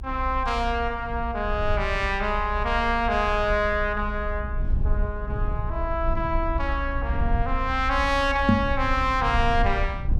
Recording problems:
low-frequency rumble; below 64 Hz, SNR 6 dB
knock on the microphone; at 8.5 s; peak +9 dB vs average level

